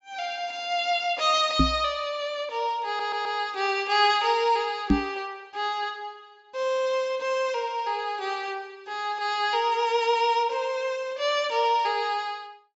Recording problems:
low-pass filter; nothing above 7.4 kHz
microphone bump; at 1.5 s and at 5 s; peak +9 dB vs average level
stutter; at 3 s

